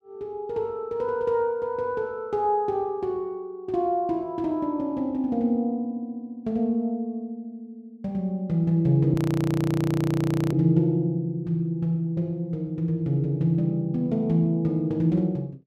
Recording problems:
audio freezing; at 9 s for 1.5 s

